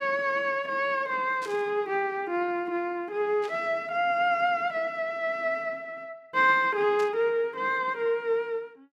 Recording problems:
burst of static; at 1.5 s, at 3.5 s and at 7 s; peak -12 dB vs average level

